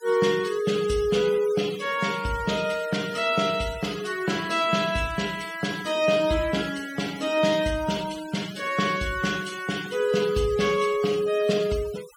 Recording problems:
noise reduction artefacts; signal-to-artefact ratio 15 dB

